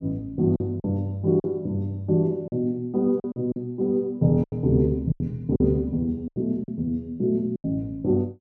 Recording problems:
packet loss; 8% of the sound replaced, filled with silence

